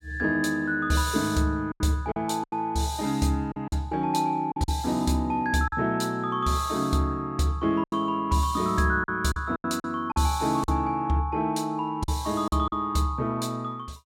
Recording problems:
packet loss; 6% of the sound replaced, filled with silence

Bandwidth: 16.5 kHz